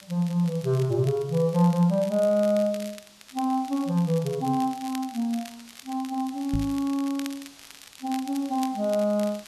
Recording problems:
background hiss; slope 0 dB per octave, SNR 24 dB
crackle; vinyl, SNR 19 dB
microphone thump; at 6.5 s; peak 0 dB vs average level

